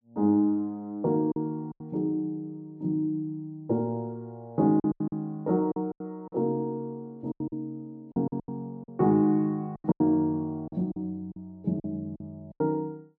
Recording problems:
packet loss; 9% of the sound replaced, filled with silence

